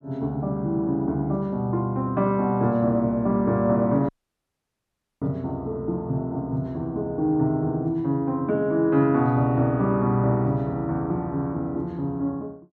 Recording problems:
audio cutting out; at 4 s for 1 s

